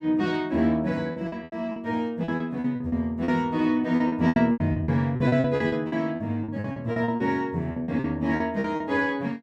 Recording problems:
lost packets; 16% of the sound replaced, filled with repeated pitch periods

